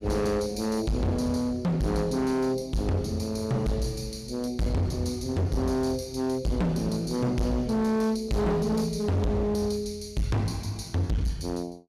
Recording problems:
distorted audio; hard clipping, uneven, signal-to-distortion ratio 6 dB

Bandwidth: 15 kHz